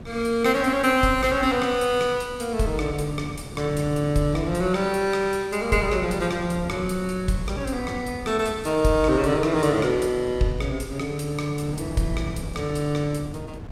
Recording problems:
wind on the microphone; below 290 Hz, SNR 15 dB

